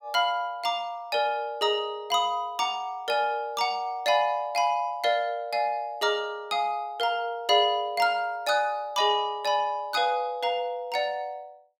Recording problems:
none

